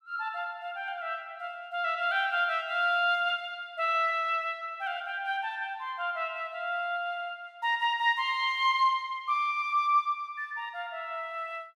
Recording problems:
none

